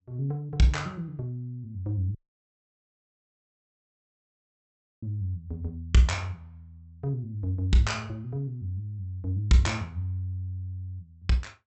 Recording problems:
low-pass filter; nothing above 7.9 kHz
audio cutting out; at 2 s for 3 s

